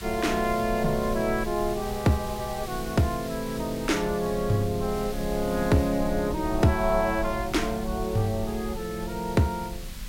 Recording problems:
background hiss; slope 0 dB per octave, SNR 15 dB
rumble; below 80 Hz, SNR 12 dB

